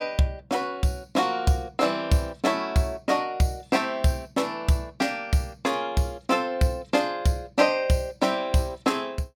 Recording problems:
none

